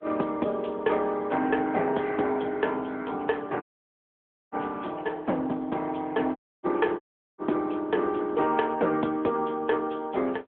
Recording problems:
telephone audio; 240 Hz to 3.4 kHz, AMR-NB
audio cutting out; at 3.5 s for 1 s, at 6.5 s and at 7 s

